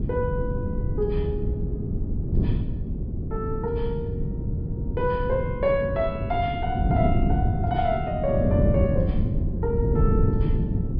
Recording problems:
low-pass filter; nothing above 5.5 kHz
wind noise; below 180 Hz, SNR -2 dB

